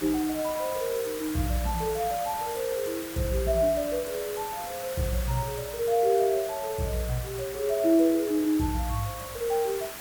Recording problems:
background hiss; SNR 10 dB

